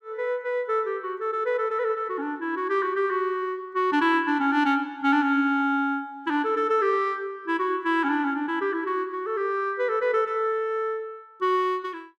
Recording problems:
none

